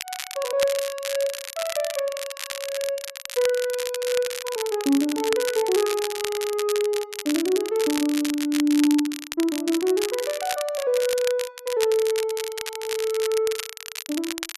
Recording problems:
crackle; vinyl, SNR 8 dB

